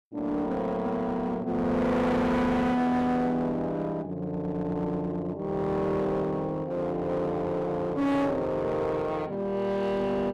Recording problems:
distortion; hard clipping, uneven, signal-to-distortion ratio 6 dB

